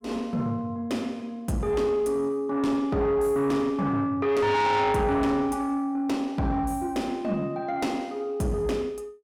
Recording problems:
distortion; soft clipping, signal-to-distortion ratio 7 dB

